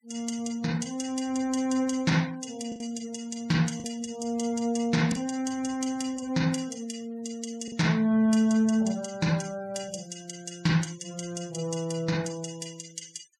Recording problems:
denoising artefacts; signal-to-artefact ratio 21 dB
packet loss; 1.5% of the sound replaced, filled with the last packet

